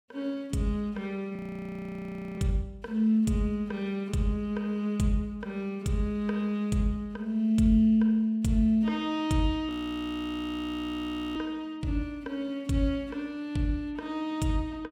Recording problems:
frozen audio; at 1.5 s for 1 s and at 9.5 s for 1.5 s

